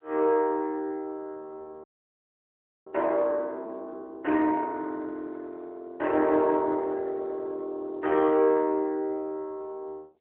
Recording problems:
telephone audio; 260 Hz to 3.1 kHz, AMR-NB
audio freezing; at 2 s for 1 s

